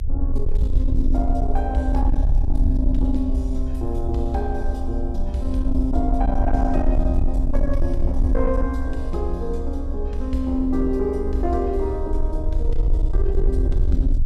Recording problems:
distortion; soft clipping, signal-to-distortion ratio 10 dB
low-frequency rumble; below 64 Hz, SNR -1 dB

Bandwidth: 14.5 kHz